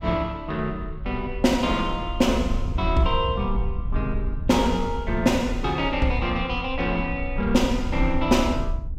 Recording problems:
wind on the microphone; below 70 Hz, SNR 7 dB

